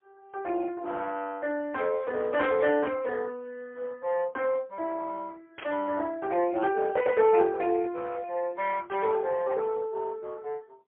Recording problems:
telephone audio; 300 Hz to 3 kHz, AMR-NB, then MP3
burst of static; at 2.5 s, at 5.5 s and at 9 s; peak -7 dB vs average level

